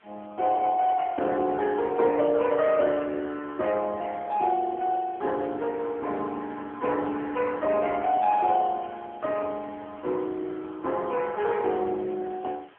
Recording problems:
telephone audio; 260 Hz to 3.4 kHz, AMR-NB
hiss; SNR 29 dB

